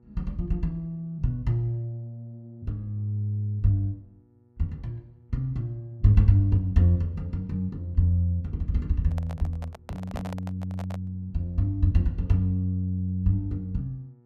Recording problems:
hum; 60 Hz, harmonics up to 960 Hz, SNR 33 dB
microphone handling noise; from 9 to 11 s; peak -6 dB vs average level

